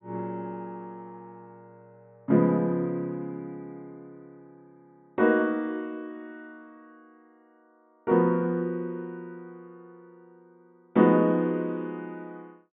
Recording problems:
treble cut off; nothing above 4 kHz

